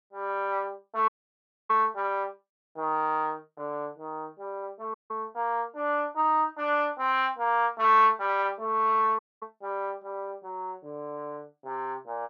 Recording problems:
audio cutting out; at 1 s for 0.5 s, at 5 s and at 9 s

